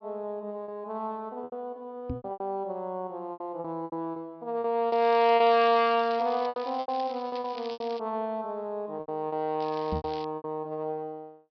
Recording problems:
treble cut off; nothing above 5.5 kHz
lost packets; 11% of the sound replaced, filled with repeated pitch periods
microphone bump; at 2 s and at 10 s; peak -1 dB vs average level
crackle; from 5 to 8 s and at 9.5 s; loose cable, SNR 19 dB

